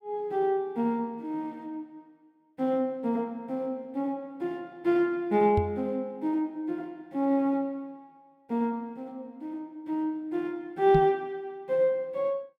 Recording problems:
microphone bump; at 5.5 s and at 11 s; peak +5 dB vs average level

